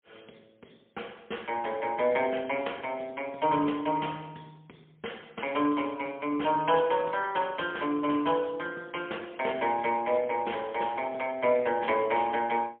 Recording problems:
phone line; 220 Hz to 3.3 kHz, AMR-NB, then MP3

